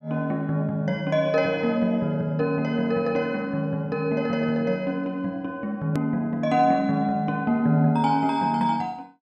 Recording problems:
edit click; at 6 s

